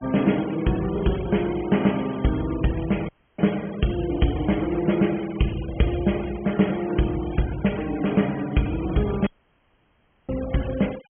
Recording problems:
low-pass filter; nothing above 3.3 kHz
noise reduction artefacts; signal-to-artefact ratio 18 dB
audio cutting out; at 3 s and at 9.5 s for 1 s

